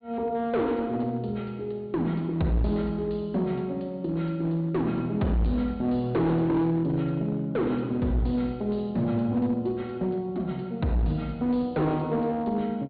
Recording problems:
treble cut off; nothing above 4.4 kHz
distorted audio; hard clipping, uneven, signal-to-distortion ratio 10 dB

